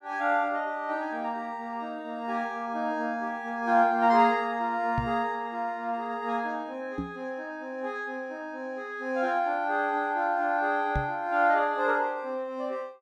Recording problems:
microphone bump; at 5 s, at 7 s and at 11 s; peak +1 dB vs average level

